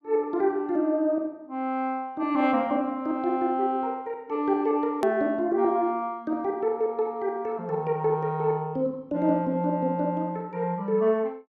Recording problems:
hard cut with a click; at 5 s

